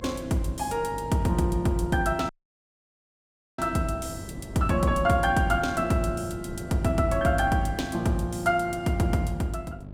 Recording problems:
electrical hum; 50 Hz, harmonics up to 700 Hz, SNR 17 dB
wind on the microphone; below 320 Hz, SNR 17 dB
dropout; at 2.5 s for 1.5 s

